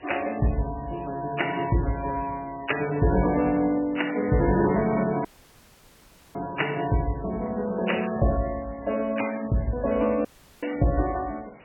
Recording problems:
codec artefacts; MP3, log-spectral distance 7 dB, nothing above 2.9 kHz
hiss; SNR 24 dB
dropout; at 5.5 s for 1 s and at 10 s

